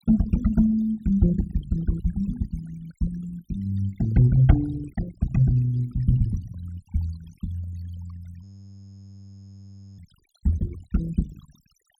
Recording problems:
denoising artefacts; signal-to-artefact ratio 20 dB
frozen audio; at 8.5 s for 1.5 s

